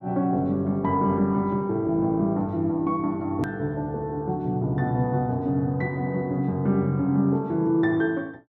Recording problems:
treble missing; nothing above 7.3 kHz
edit click; at 3.5 s

